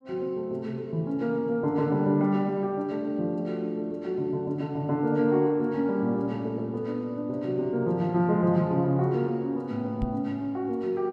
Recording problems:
knock on the microphone; at 10 s; peak -1 dB vs average level

